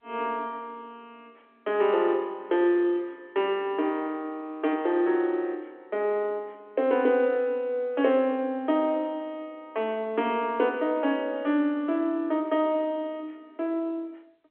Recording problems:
phone line; 240 Hz to 3.4 kHz, G.711

